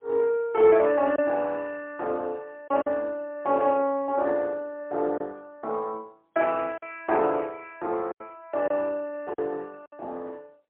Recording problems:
phone line; 300 Hz to 3.1 kHz, AMR-NB, then MP3
lost packets; 3% of the sound replaced, filled with silence

